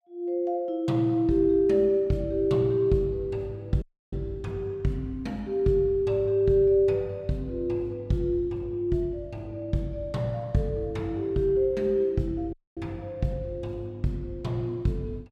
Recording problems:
dropout; at 4 s and at 13 s

